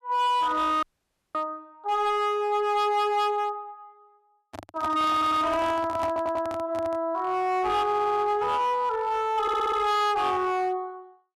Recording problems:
distortion; hard clipping, signal-to-distortion ratio 11 dB
audio cutting out; at 1 s for 0.5 s
microphone handling noise; from 4.5 to 7 s; peak -5 dB vs average level
stutter; 4 times, first at 5 s

